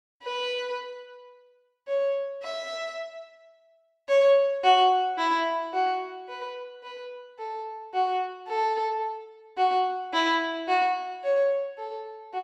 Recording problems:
none

